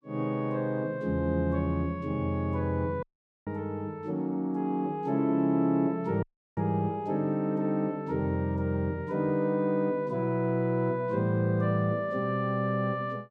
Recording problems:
audio cutting out; at 3 s and at 6 s

